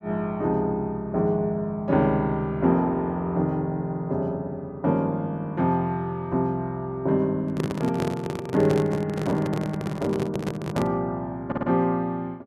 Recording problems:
handling noise; from 7.5 to 11 s; peak +2 dB vs average level
stutter; at 11 s

